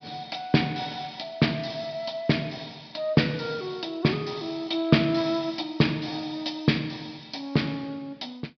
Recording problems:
treble cut off; nothing above 5.5 kHz

